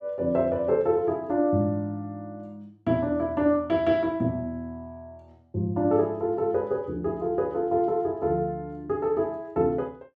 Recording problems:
none

